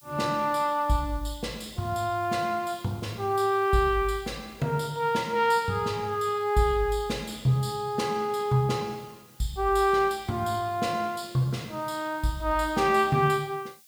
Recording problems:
background hiss; SNR 27 dB

